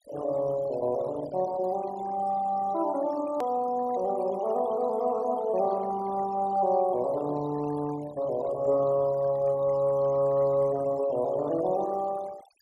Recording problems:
denoising artefacts; signal-to-artefact ratio 18 dB
click at an edit; at 3.5 s

